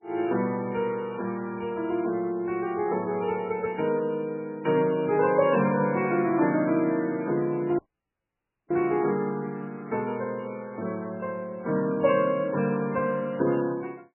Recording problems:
lossy codec; MP3, log-spectral distance 2 dB, nothing above 2.4 kHz
dropout; at 8 s for 1 s

